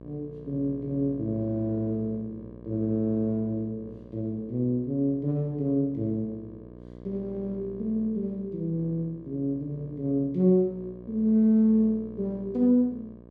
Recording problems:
mains hum; 60 Hz, harmonics up to 1.2 kHz, SNR 18 dB

